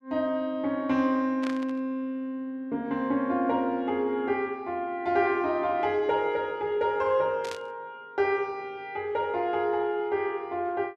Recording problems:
burst of static; at 1.5 s and at 7.5 s; peak -7 dB vs average level

